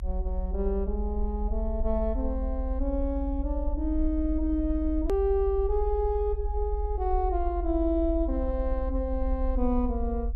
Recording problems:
low-frequency rumble; below 60 Hz, strongest tone 44 Hz, SNR 3 dB
click at an edit; at 5 s

